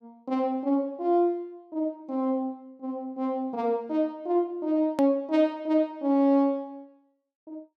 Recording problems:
click at an edit; at 5 s

